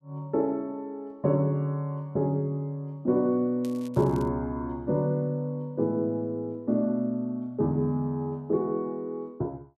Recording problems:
crackling; at 3.5 s; loose cable, SNR 25 dB

